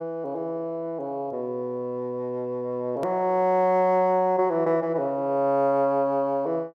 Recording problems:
click at an edit; at 3 s

